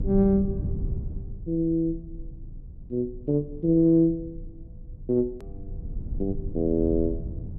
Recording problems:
rumble; below 110 Hz, SNR 11 dB
click at an edit; at 5.5 s

